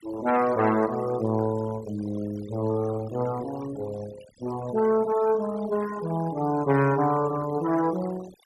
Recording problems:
denoising artefacts; signal-to-artefact ratio 18 dB

